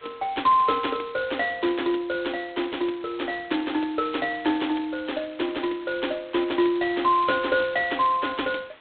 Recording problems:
telephone audio; 240 Hz to 3.9 kHz, G.726
background hiss; SNR 26 dB

